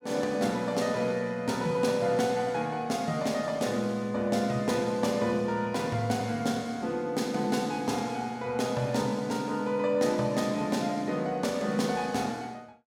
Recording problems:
none

